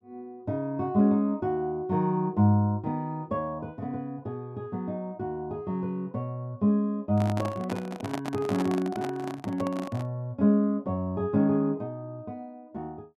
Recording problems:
handling noise; from 7 to 10 s; peak -1 dB vs average level

